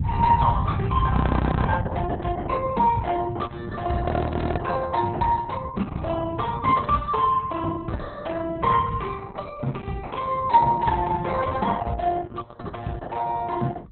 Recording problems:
codec artefacts; Opus, log-spectral distance 4 dB, nothing above 4 kHz
rumble; below 190 Hz, SNR 5 dB
frozen audio; at 1 s for 0.5 s and at 4 s for 0.5 s

